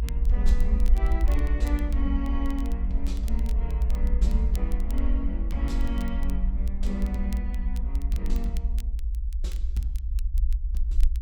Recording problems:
low-frequency rumble; below 60 Hz, SNR -7 dB
crackling; vinyl, SNR 17 dB

